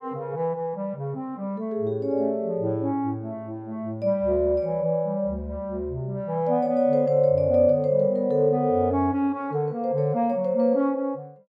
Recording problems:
none

